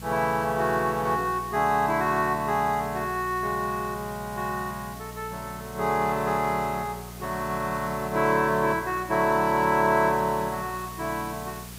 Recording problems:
electrical hum; 60 Hz, harmonics up to 600 Hz, SNR 17 dB
hiss; slope -1 dB per octave, SNR 18 dB

